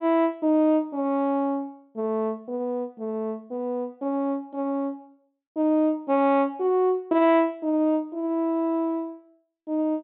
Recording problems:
treble missing; nothing above 4 kHz

